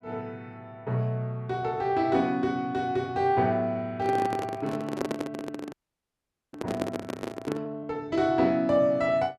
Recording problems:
handling noise; from 4 to 7.5 s; peak +3 dB vs average level
frozen audio; at 5.5 s for 1 s

